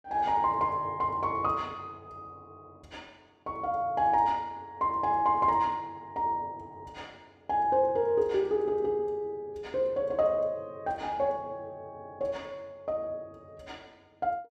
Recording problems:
none

